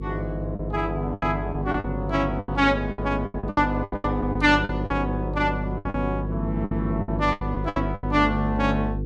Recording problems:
hum; 50 Hz, harmonics up to 500 Hz, SNR 5 dB
lost packets; 14% of the sound replaced, filled with the last packet

